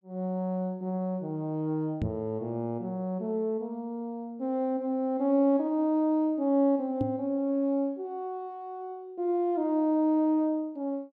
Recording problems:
microphone bump; at 2 s and at 7 s; peak +2 dB vs average level

